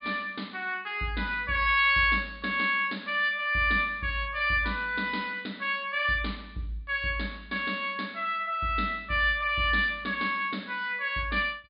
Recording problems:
treble missing; nothing above 5 kHz

